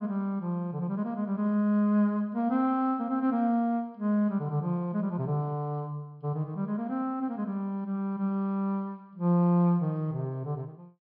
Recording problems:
treble missing; nothing above 5.5 kHz

